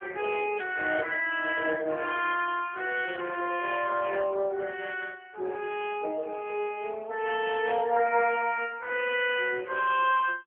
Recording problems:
phone line; 320 Hz to 3.3 kHz, AMR-NB

